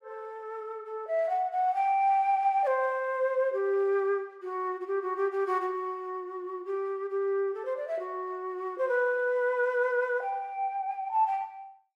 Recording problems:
none

